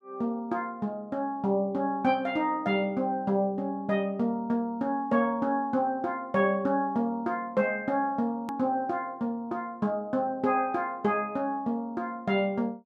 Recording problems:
hard cut with a click; at 8.5 s

